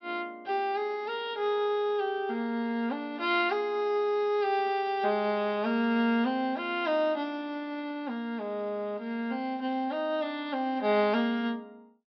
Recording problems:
low-pass filter; nothing above 5.5 kHz

